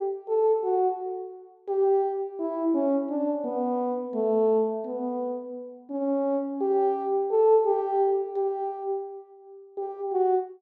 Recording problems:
none

